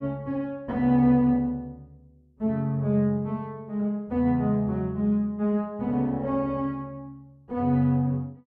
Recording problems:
none

